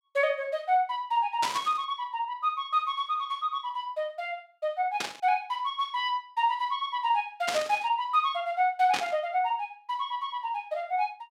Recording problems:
static burst; 4 times, first at 1.5 s; peak +2 dB vs average level

